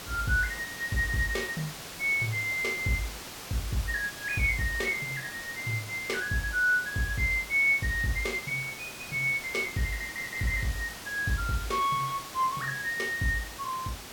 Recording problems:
hiss; slope -2 dB per octave, SNR 11 dB

